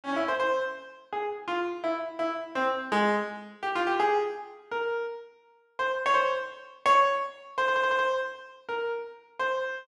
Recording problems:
stutter; at 7.5 s

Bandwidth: 12.5 kHz